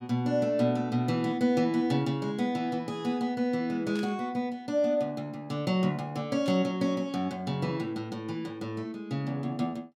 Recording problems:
static burst; at 4 s and at 6.5 s; peak -11 dB vs average level

